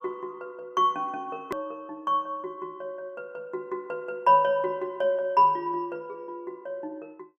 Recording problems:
edit click; at 1.5 s

